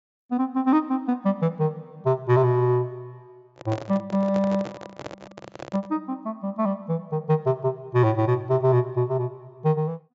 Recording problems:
low-pass filter; nothing above 8 kHz
handling noise; from 3.5 to 6 s; peak -5 dB vs average level

